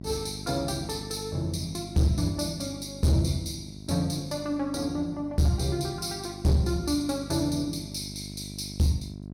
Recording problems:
distortion; hard clipping, signal-to-distortion ratio 11 dB
hum; 50 Hz, harmonics up to 750 Hz, SNR 13 dB

